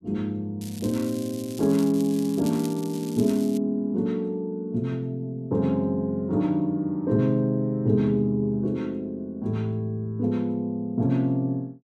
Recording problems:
crackle; from 0.5 to 3.5 s; loose cable, SNR 17 dB

